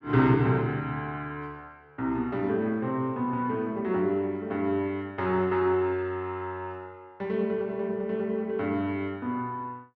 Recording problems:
none

